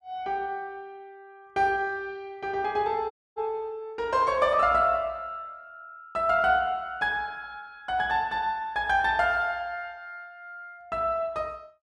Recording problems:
audio cutting out; at 3 s

